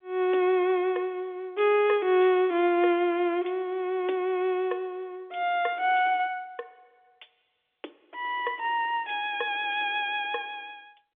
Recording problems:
telephone audio; 280 Hz to 3.6 kHz, G.711

